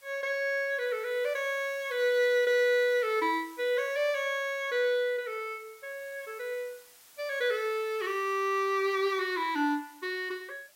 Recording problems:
hiss; slope +1 dB per octave, SNR 24 dB

